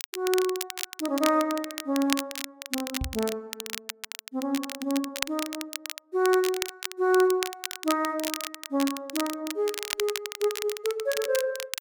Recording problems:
crackle; vinyl, SNR 6 dB
microphone thump; at 3 s; peak 0 dB vs average level

